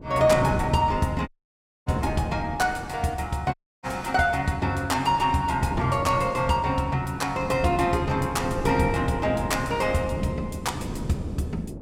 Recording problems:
wind noise; below 310 Hz, SNR 9 dB
dropout; at 1.5 s for 0.5 s and at 3.5 s

